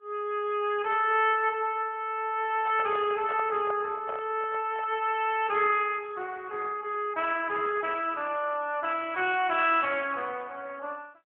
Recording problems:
telephone audio; 340 Hz to 3.3 kHz, AMR-NB
microphone handling noise; from 2.5 to 5 s; peak -7 dB vs average level

